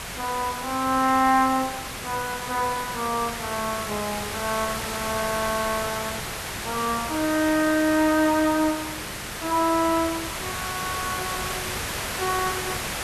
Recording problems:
background hiss; slope -2 dB per octave, SNR 5 dB

